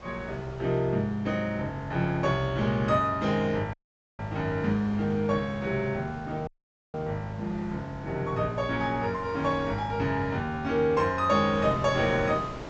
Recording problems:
low-pass filter; nothing above 8 kHz
wind on the microphone; below 1 kHz, SNR 17 dB
dropout; at 3.5 s and at 6.5 s

